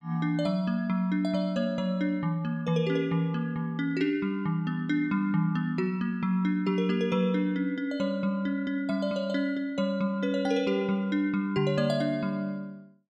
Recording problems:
none

